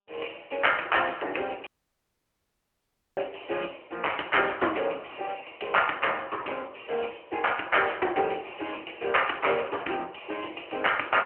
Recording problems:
phone line; 280 Hz to 3.1 kHz, AMR-NB
audio cutting out; at 1.5 s for 1.5 s

